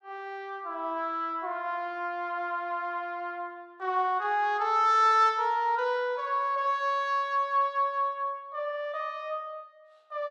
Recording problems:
none

